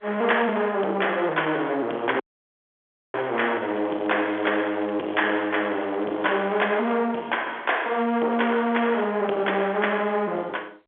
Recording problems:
telephone audio; 260 Hz to 3.5 kHz, G.711
distorted audio; soft clipping, signal-to-distortion ratio 12 dB
dropout; at 2 s for 1 s
crackle; from 3.5 to 7 s and from 7.5 to 9 s; loose cable, SNR 22 dB

